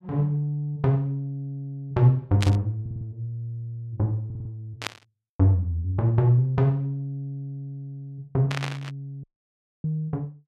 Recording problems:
burst of static; at 2.5 s, at 5 s and at 8.5 s; peak 0 dB vs average level
audio stuttering; at 3 s and at 4.5 s
audio cutting out; at 9 s for 0.5 s

